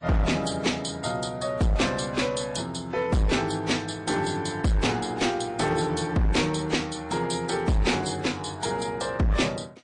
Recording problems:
lossy compression; AAC, then MP3, log-spectral distance 4 dB, nothing above 9.2 kHz
distorted audio; hard clipping, uneven, signal-to-distortion ratio 6 dB

